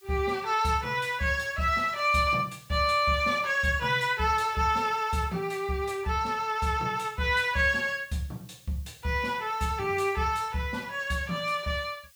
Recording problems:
hiss; slope +6 dB per octave, SNR 28 dB

